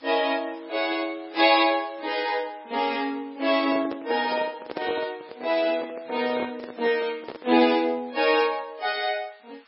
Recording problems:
codec artefacts; MP3, log-spectral distance 6 dB, nothing above 4.4 kHz
background hiss; SNR 28 dB
microphone handling noise; from 3.5 to 7.5 s; peak -3 dB vs average level

